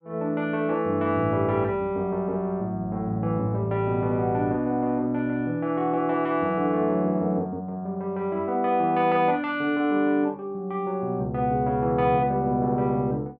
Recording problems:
none

